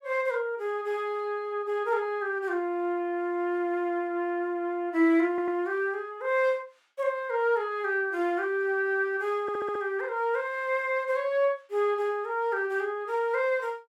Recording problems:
audio stuttering; at 5.5 s and at 9.5 s

